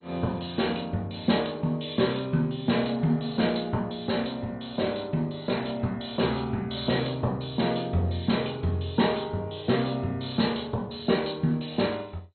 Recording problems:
lossy compression; MP2, log-spectral distance 8 dB, nothing above 4.2 kHz

